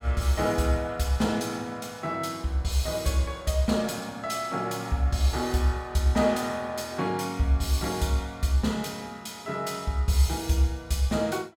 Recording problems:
none

